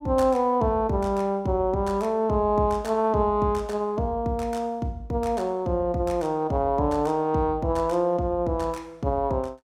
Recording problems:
none

